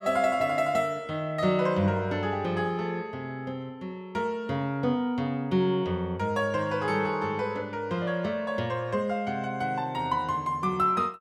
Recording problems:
none

